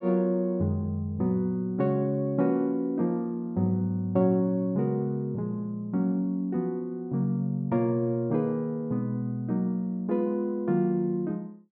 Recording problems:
none

